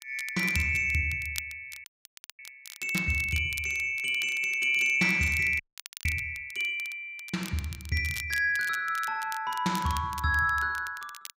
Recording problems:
crackling; vinyl, SNR 16 dB
audio freezing; at 2 s for 0.5 s and at 5.5 s

